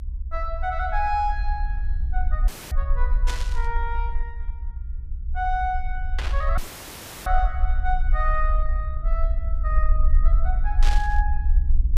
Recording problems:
low-frequency rumble; below 50 Hz, SNR -4 dB
dropout; at 2.5 s and at 6.5 s for 0.5 s; filled with static
static burst; at 3.5 s, at 6 s and at 11 s; peak +2 dB vs average level

